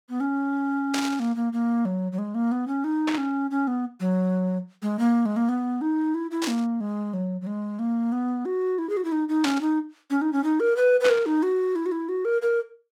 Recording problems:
static burst; 5 times, first at 1 s; peak +1 dB vs average level

